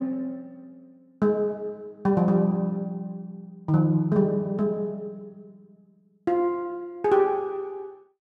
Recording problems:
none

